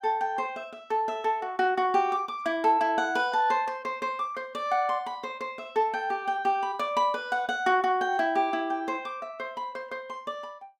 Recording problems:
none

